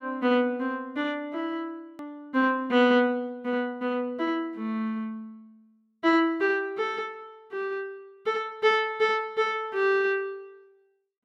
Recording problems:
click at an edit; at 2 s

